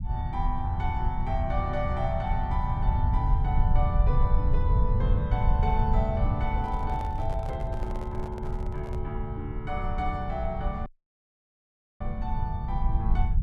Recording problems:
low-frequency rumble; below 90 Hz, SNR -4 dB
microphone handling noise; from 6.5 to 9 s; peak -6 dB vs average level
dropout; at 11 s for 1 s

